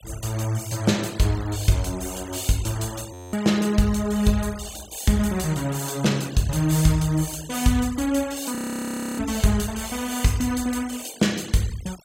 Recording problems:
noise reduction artefacts; signal-to-artefact ratio 17 dB
frozen audio; at 3 s and at 8.5 s for 0.5 s

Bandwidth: 16 kHz